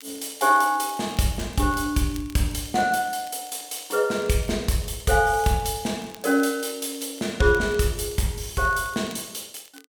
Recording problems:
crackling; vinyl, SNR 24 dB

